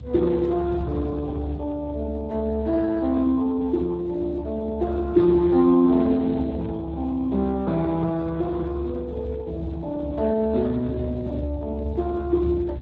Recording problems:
lossy compression; Speex, log-spectral distance 3 dB
low-frequency rumble; below 92 Hz, strongest tone 70 Hz, SNR 11 dB

